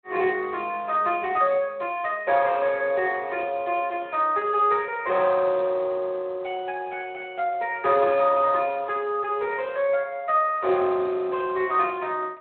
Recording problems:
phone line; 280 Hz to 3.7 kHz, Speex

